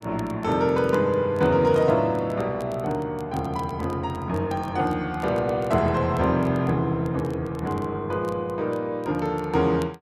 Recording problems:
crackle; vinyl, SNR 29 dB

